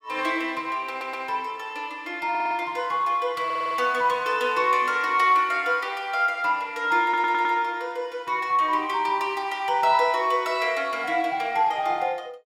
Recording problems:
stutter; 4 times, first at 1 s

